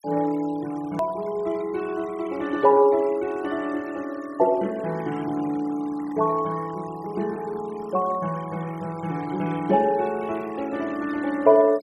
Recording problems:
noise reduction artefacts; signal-to-artefact ratio 21 dB
hard cut with a click; at 1 s

